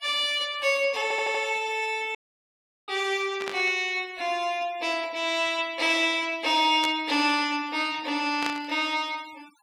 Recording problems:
noise reduction artefacts; signal-to-artefact ratio 23 dB
stutter; at 1 s
audio cutting out; at 2 s for 0.5 s
burst of static; at 3.5 s, at 7 s and at 8.5 s; peak -2 dB vs average level

